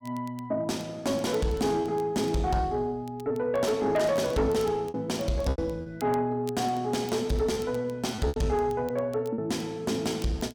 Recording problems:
distorted audio; soft clipping, signal-to-distortion ratio 12 dB
crackling; vinyl, SNR 25 dB
packet loss; 5% of the sound replaced, filled with repeated pitch periods

